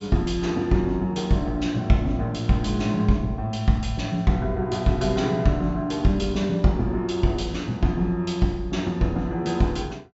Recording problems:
treble missing; nothing above 7.6 kHz

